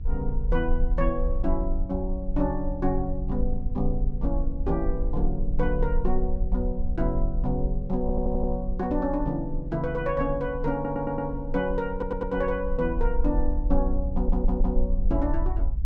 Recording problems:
electrical hum; 50 Hz, harmonics up to 700 Hz, SNR 19 dB
rumble; below 46 Hz, SNR 2 dB
audio stuttering; 4 times, first at 8 s

